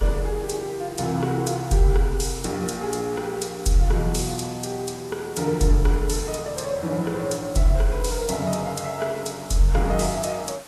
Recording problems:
lossy codec; Vorbis, then Vorbis, log-spectral distance 5 dB, nothing above 12.3 kHz
hiss; slope -2 dB per octave, SNR 19 dB

